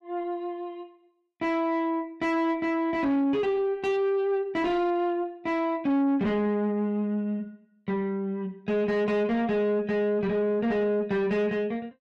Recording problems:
distortion; soft clipping, signal-to-distortion ratio 9 dB

